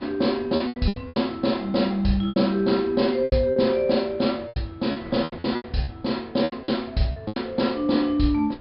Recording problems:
treble cut off; nothing above 5.2 kHz
wind on the microphone; below 690 Hz, SNR 22 dB
lost packets; 13% of the sound replaced, filled with repeated pitch periods

